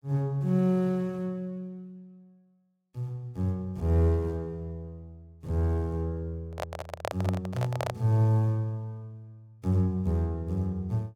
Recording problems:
microphone handling noise; from 6.5 to 8 s; peak 0 dB vs average level

